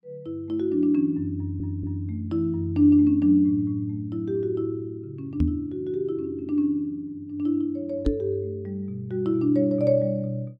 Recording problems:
audio stuttering; at 1.5 s
knock on the microphone; at 5.5 s and at 8 s; peak +5 dB vs average level

